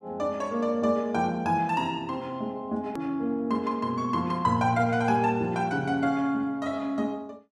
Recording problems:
click at an edit; at 3 s

